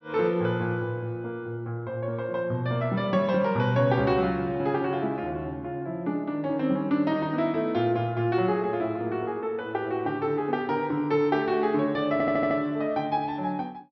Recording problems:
low-pass filter; nothing above 5.9 kHz
stutter; at 12 s

